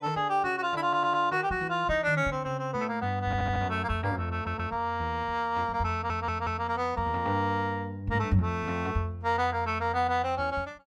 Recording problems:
stutter; 4 times, first at 1 s

